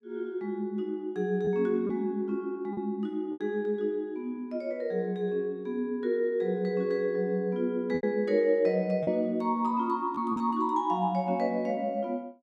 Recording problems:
lost packets; 3% of the sound replaced, filled with repeated pitch periods

